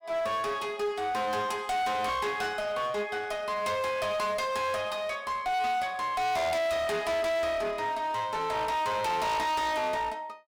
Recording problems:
distorted audio; hard clipping, uneven, signal-to-distortion ratio 5 dB

